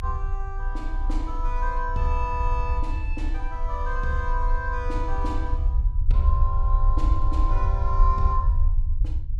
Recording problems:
low-frequency rumble; below 56 Hz, strongest tone 28 Hz, SNR -4 dB

